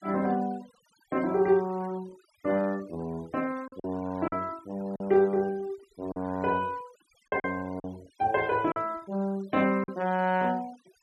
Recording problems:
denoising artefacts; signal-to-artefact ratio 23 dB
lost packets; 4% of the sound replaced, filled with silence

